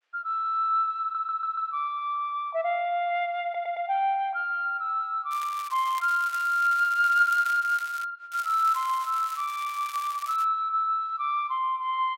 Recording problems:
stutter; at 1 s and at 3.5 s
crackling; from 5.5 to 8 s and from 8.5 to 10 s; loose cable, SNR 17 dB

